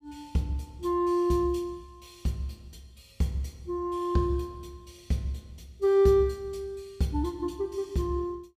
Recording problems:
none

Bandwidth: 15.5 kHz